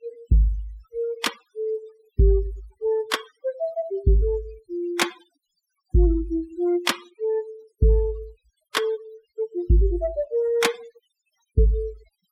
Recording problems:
noise reduction artefacts; signal-to-artefact ratio 20 dB

